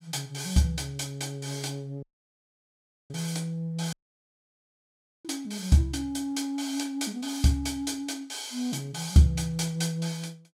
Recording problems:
audio cutting out; at 2 s for 1 s and at 4 s for 1.5 s

